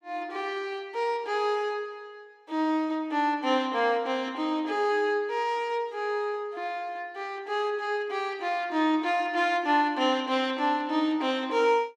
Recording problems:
none

